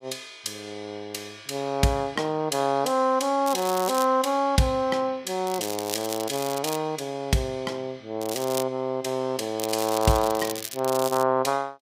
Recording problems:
crackling; 4 times, first at 3.5 s; loose cable, SNR 9 dB

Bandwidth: 15.5 kHz